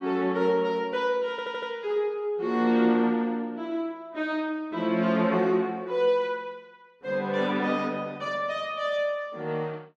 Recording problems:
stutter; at 1.5 s

